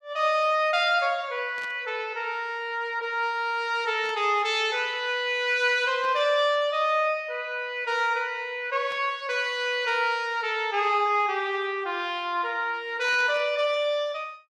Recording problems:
static burst; 5 times, first at 1.5 s; peak -13 dB vs average level

